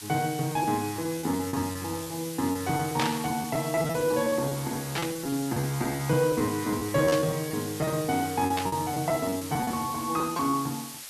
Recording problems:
hiss; slope +2 dB per octave, SNR 10 dB
packet loss; 14% of the sound replaced, filled with repeated pitch periods
static burst; 4 times, first at 3 s; peak +3 dB vs average level

